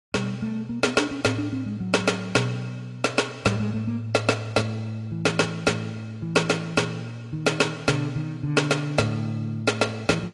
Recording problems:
lossy codec; AAC, log-spectral distance 3 dB, nothing above 10.4 kHz

